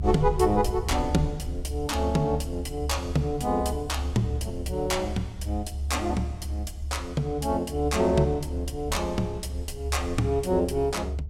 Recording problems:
rumble; below 74 Hz, strongest tone 70 Hz, SNR 6 dB

